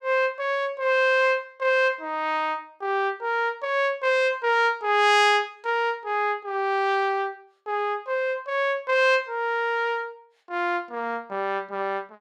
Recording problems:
none

